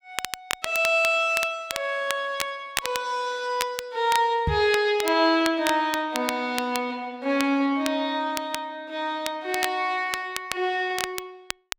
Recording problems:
crackling; vinyl, SNR 9 dB
knock on the microphone; at 4.5 s; peak +2 dB vs average level

